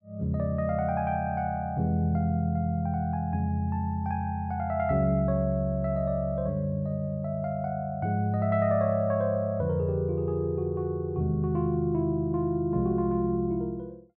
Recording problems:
none

